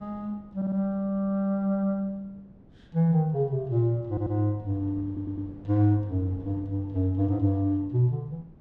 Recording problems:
wind noise; below 300 Hz, SNR 22 dB
audio stuttering; at 0.5 s, at 4 s and at 5 s

